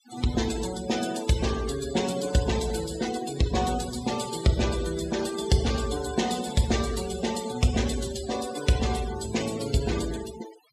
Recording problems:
noise reduction artefacts; signal-to-artefact ratio 11 dB

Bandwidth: 15 kHz